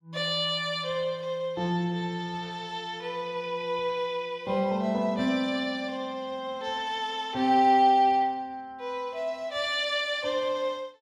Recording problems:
none

